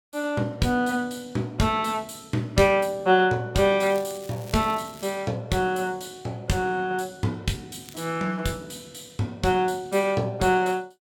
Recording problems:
crackling; from 4 to 5 s and at 8 s; loose cable, SNR 22 dB

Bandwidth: 17 kHz